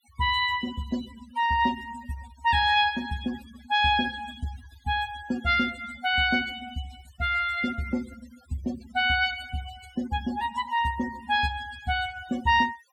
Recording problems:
denoising artefacts; signal-to-artefact ratio 19 dB

